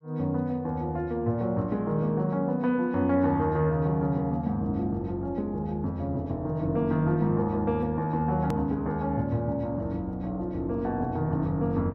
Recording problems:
hard cut with a click; at 8.5 s

